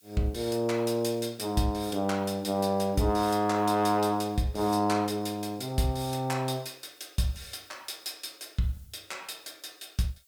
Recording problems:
background hiss; SNR 30 dB

